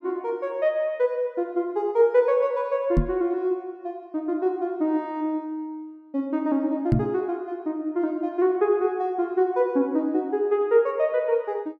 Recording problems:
microphone bump; at 3 s and at 7 s; peak +7 dB vs average level

